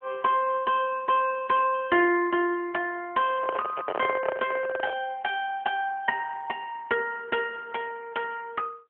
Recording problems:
telephone audio; 240 Hz to 3.2 kHz, AMR-NB
microphone handling noise; from 3.5 to 5 s; peak +2 dB vs average level

